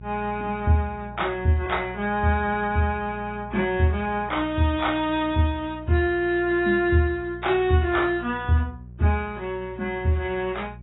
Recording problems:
codec artefacts; AAC, log-spectral distance 2 dB, nothing above 3.8 kHz
electrical hum; 60 Hz, harmonics up to 420 Hz, SNR 17 dB

